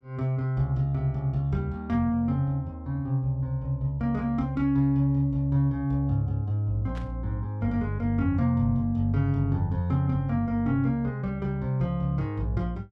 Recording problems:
static burst; at 7 s; peak -15 dB vs average level

